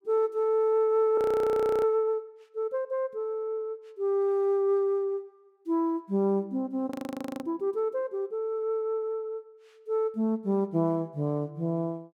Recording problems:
audio freezing; at 1 s for 0.5 s and at 7 s for 0.5 s

